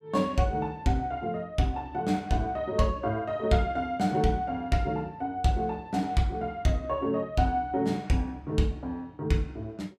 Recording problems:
none

